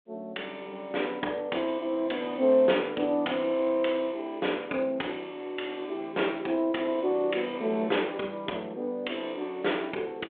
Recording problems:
phone line; 240 Hz to 3.6 kHz, G.726

